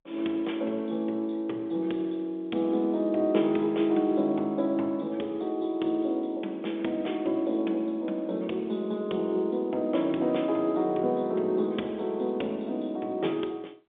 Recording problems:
phone line; 220 Hz to 3.6 kHz, G.711

